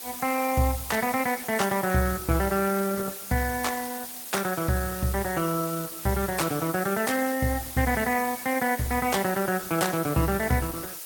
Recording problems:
lossy compression; Opus, log-spectral distance 8 dB, nothing above 17.7 kHz
hiss; slope 0 dB per octave, SNR 9 dB

